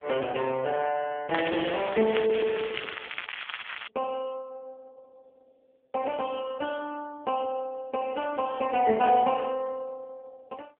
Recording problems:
phone line; 260 Hz to 3.2 kHz, AMR-NB
crackling; from 1.5 to 4 s; loose cable, SNR 7 dB

